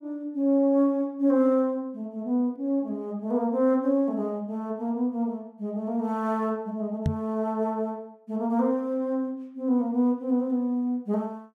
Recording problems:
microphone thump; at 7 s; peak +4 dB vs average level

